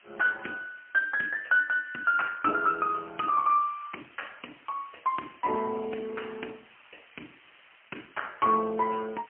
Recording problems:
phone line; 220 Hz to 3 kHz, AMR-NB, then MP3
hiss; SNR 27 dB

